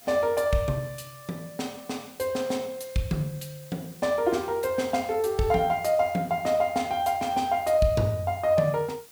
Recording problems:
hiss; slope 0 dB per octave, SNR 22 dB

